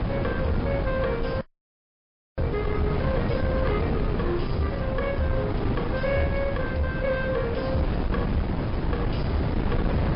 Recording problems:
low-pass filter; nothing above 5.2 kHz
codec artefacts; MP3, then MP3, log-spectral distance 2 dB
distortion; soft clipping, signal-to-distortion ratio 12 dB
wind noise; below 360 Hz, SNR -1 dB
frozen audio; at 1.5 s for 1 s

